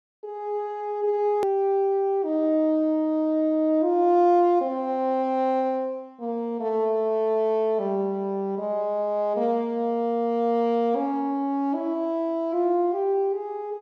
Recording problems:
hard cut with a click; at 1.5 s

